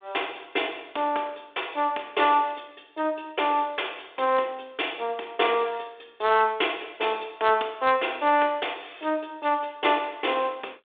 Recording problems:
phone line; 320 Hz to 3.6 kHz, G.726

